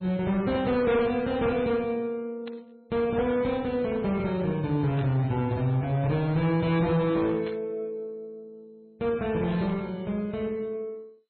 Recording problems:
lossy codec; MP2, then MP3, log-spectral distance 2 dB, nothing above 4.1 kHz
distorted audio; hard clipping, uneven, signal-to-distortion ratio 10 dB
burst of static; 4 times, first at 2.5 s; peak -12 dB vs average level

